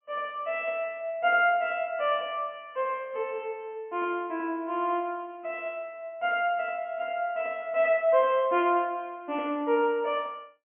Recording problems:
low-pass filter; nothing above 3.1 kHz

